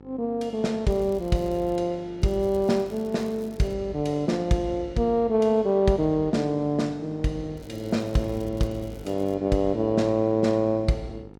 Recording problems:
hum; 50 Hz, harmonics up to 1.4 kHz, SNR 21 dB
crackling; at 1 s, from 2 to 3.5 s and from 7.5 to 9.5 s; loose cable, SNR 29 dB

